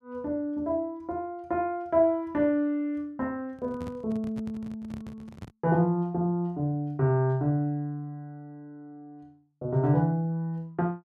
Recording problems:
handling noise; from 3.5 to 5.5 s; peak -7 dB vs average level

